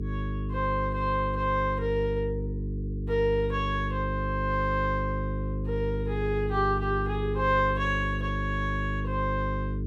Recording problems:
electrical hum; 50 Hz, harmonics up to 450 Hz, SNR 3 dB

